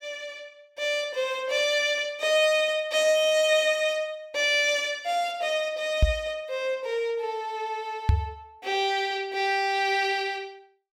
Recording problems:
knock on the microphone; at 6 s and at 8 s; peak +7 dB vs average level

